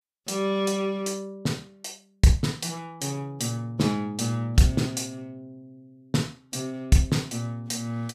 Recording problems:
none

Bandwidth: 15 kHz